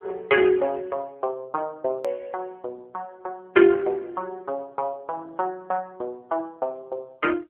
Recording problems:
phone line; 280 Hz to 3.3 kHz, AMR-NB
click at an edit; at 2 s

